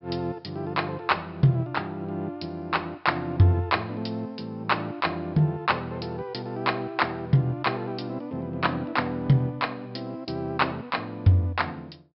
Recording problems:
low-pass filter; nothing above 5.4 kHz

